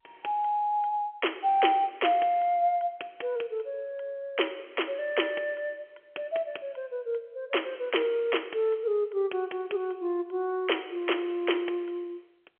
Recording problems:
phone line; 320 Hz to 3.3 kHz, G.711

